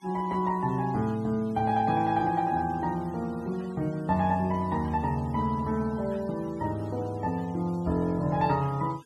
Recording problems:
noise reduction artefacts; signal-to-artefact ratio 24 dB

